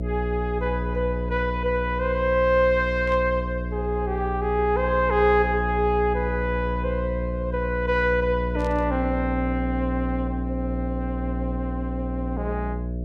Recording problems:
hum; 60 Hz, harmonics up to 660 Hz, SNR 4 dB
static burst; at 3 s and at 8.5 s; peak -14 dB vs average level

